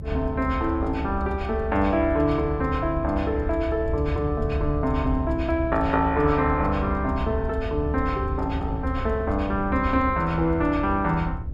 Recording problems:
low-frequency rumble; below 82 Hz, SNR 6 dB

